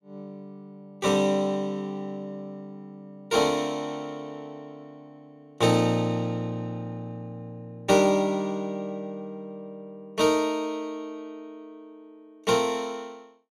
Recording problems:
none

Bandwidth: 14 kHz